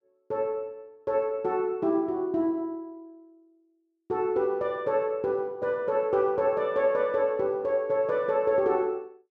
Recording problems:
none

